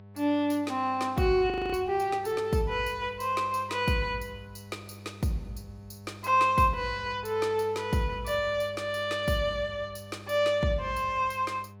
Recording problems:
mains hum; 50 Hz, harmonics up to 1.3 kHz, SNR 19 dB
frozen audio; at 1.5 s

